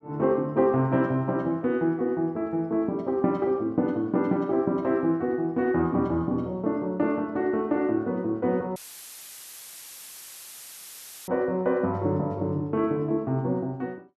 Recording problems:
dropout; at 9 s for 2.5 s; filled with static

